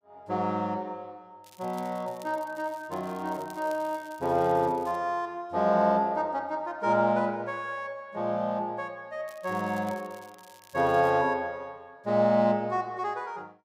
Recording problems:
crackling; from 1.5 to 5 s and from 9.5 to 11 s; loose cable, SNR 26 dB

